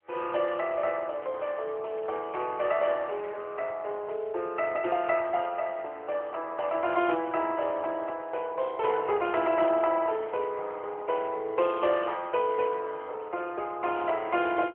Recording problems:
telephone audio; 320 Hz to 3.3 kHz, AMR-NB

